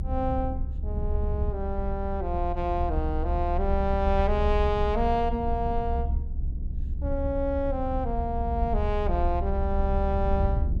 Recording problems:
low-frequency rumble; below 68 Hz, strongest tone 26 Hz, SNR 1 dB

